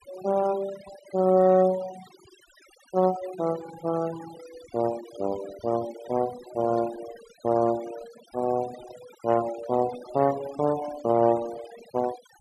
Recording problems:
denoising artefacts; signal-to-artefact ratio 17 dB

